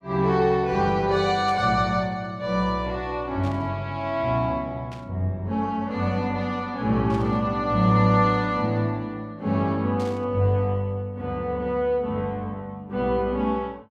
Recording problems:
static burst; 5 times, first at 1.5 s; peak -15 dB vs average level

